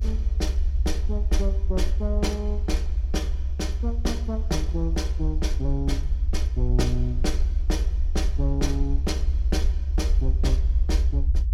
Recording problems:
low-frequency rumble; below 68 Hz, SNR -5 dB

